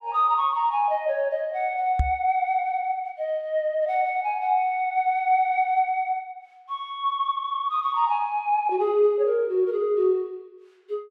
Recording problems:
microphone thump; at 2 s; peak +4 dB vs average level

